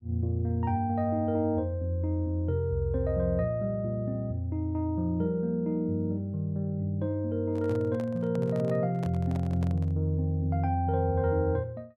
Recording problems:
microphone handling noise; from 7.5 to 10 s; peak -9 dB vs average level

